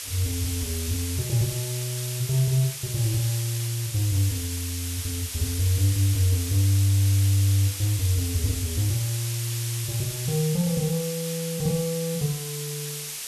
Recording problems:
hiss; slope +3 dB per octave, SNR 6 dB

